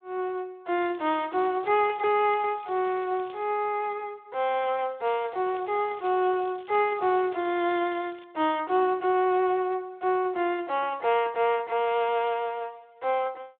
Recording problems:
telephone audio; 280 Hz to 3.7 kHz, Speex
crackle; from 1 to 3.5 s and from 5 to 8 s; loose cable, SNR 27 dB

